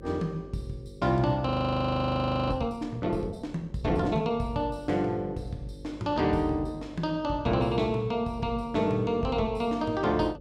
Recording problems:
hum; 50 Hz, harmonics up to 550 Hz, SNR 18 dB
frozen audio; at 1.5 s for 1 s

